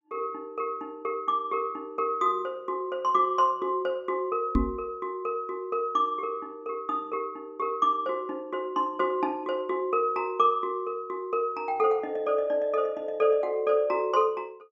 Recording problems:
microphone bump; at 4.5 s; peak +6 dB vs average level

